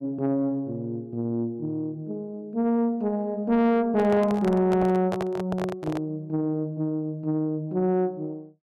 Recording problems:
distortion; soft clipping, signal-to-distortion ratio 10 dB
handling noise; from 4 to 6 s; peak 0 dB vs average level

